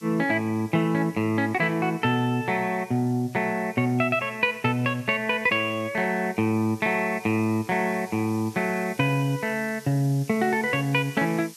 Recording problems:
hiss; slope +5 dB per octave, SNR 23 dB

